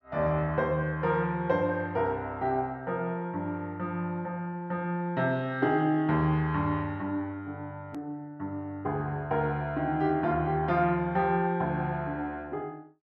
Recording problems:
hard cut with a click; at 8 s

